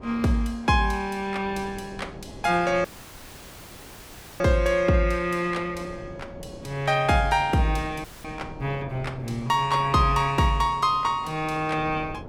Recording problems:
wind on the microphone; below 460 Hz, SNR 19 dB
dropout; at 3 s for 1.5 s and at 8 s

